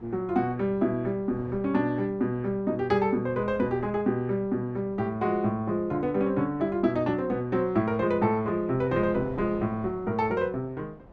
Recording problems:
wind on the microphone; below 550 Hz, SNR 21 dB

